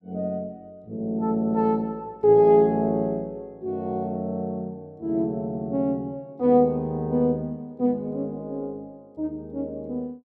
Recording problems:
none

